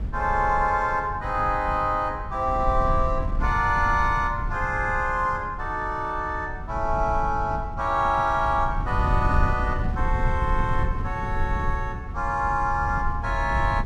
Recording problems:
wind noise; below 98 Hz, SNR 6 dB

